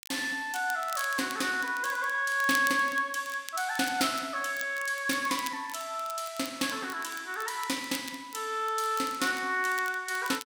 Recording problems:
crackle; vinyl, SNR 15 dB

